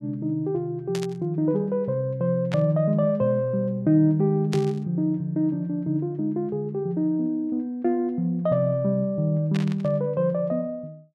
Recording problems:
burst of static; 4 times, first at 1 s; peak -6 dB vs average level

